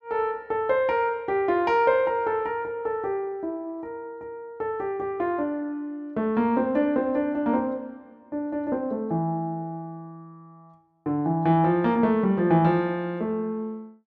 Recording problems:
none

